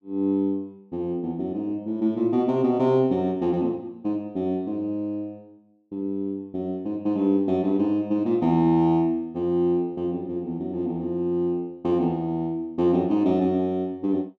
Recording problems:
none

